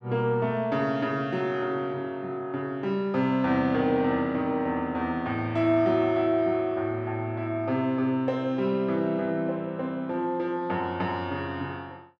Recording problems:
none

